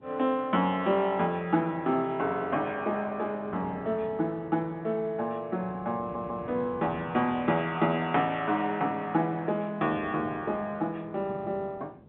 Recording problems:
phone line; 130 Hz to 3.8 kHz, G.711
wind on the microphone; below 380 Hz, SNR 20 dB
audio stuttering; at 6 s

